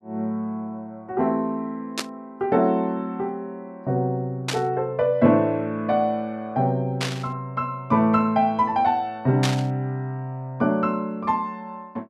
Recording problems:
static burst; 4 times, first at 2 s; peak +2 dB vs average level

